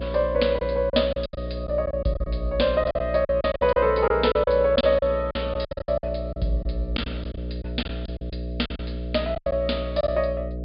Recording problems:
treble cut off; nothing above 5.1 kHz
electrical hum; 60 Hz, harmonics up to 660 Hz, SNR 9 dB
lost packets; 13% of the sound replaced, filled with silence

